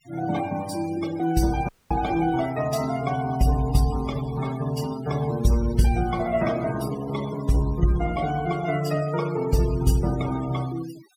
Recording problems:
denoising artefacts; signal-to-artefact ratio 16 dB
audio cutting out; at 1.5 s

